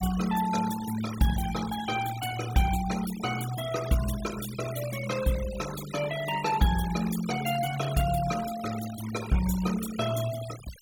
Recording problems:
denoising artefacts; signal-to-artefact ratio 12 dB

